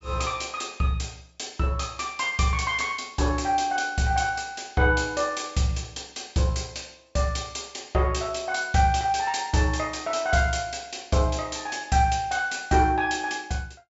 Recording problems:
treble cut off; nothing above 8 kHz

